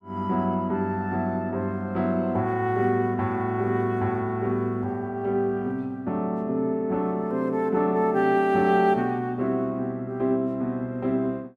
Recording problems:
none

